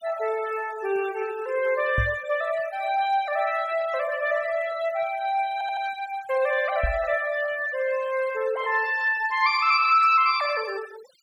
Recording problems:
denoising artefacts; signal-to-artefact ratio 18 dB
microphone bump; at 2 s and at 7 s; peak +1 dB vs average level
audio stuttering; at 5.5 s

